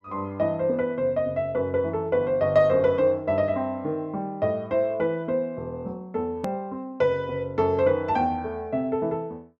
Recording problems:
hard cut with a click; at 6.5 s

